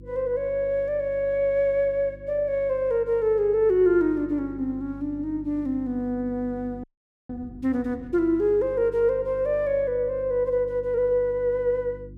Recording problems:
hum; 50 Hz, harmonics up to 350 Hz, SNR 20 dB
frozen audio; at 7 s

